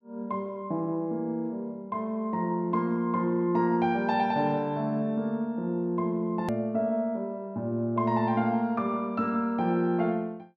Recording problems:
edit click; at 6.5 s

